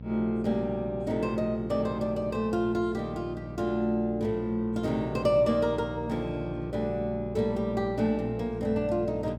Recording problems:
hum; 60 Hz, harmonics up to 780 Hz, SNR 11 dB

